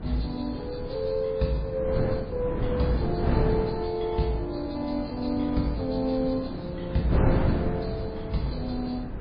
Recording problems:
lossy compression; MP3, log-spectral distance 3 dB, nothing above 4.6 kHz
wind noise; below 300 Hz, SNR 2 dB

